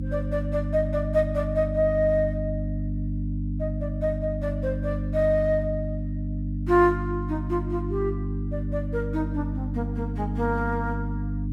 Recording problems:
hum; 50 Hz, harmonics up to 300 Hz, SNR 3 dB

